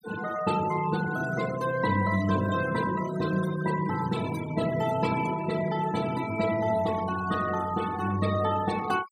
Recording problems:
denoising artefacts; signal-to-artefact ratio 13 dB

